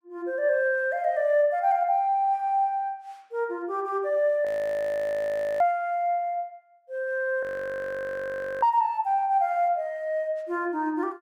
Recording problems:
audio freezing; at 4.5 s for 1 s and at 7.5 s for 1 s

